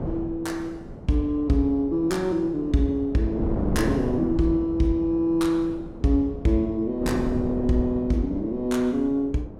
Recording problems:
wind on the microphone; below 360 Hz, SNR 10 dB

